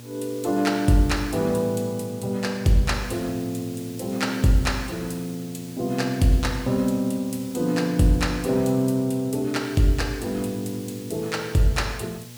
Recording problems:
hum; 60 Hz, harmonics up to 1.1 kHz, SNR 19 dB
hiss; slope +3 dB per octave, SNR 19 dB

